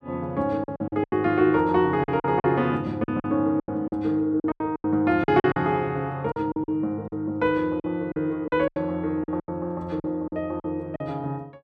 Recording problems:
lost packets; 13% of the sound replaced, filled with silence

